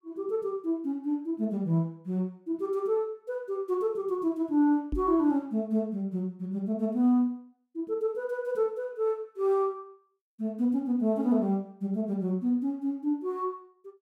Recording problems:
microphone thump; at 5 s; peak 0 dB vs average level

